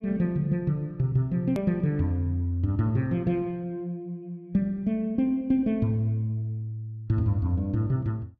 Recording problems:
click at an edit; at 1.5 s

